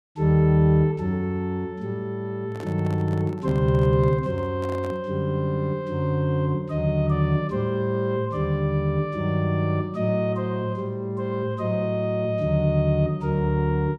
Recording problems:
microphone handling noise; from 2.5 to 5 s; peak -11 dB vs average level

